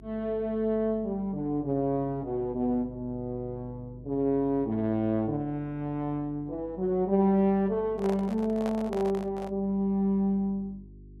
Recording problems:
hum; 50 Hz, harmonics up to 400 Hz, SNR 21 dB
microphone handling noise; from 8 to 9.5 s; peak -5 dB vs average level

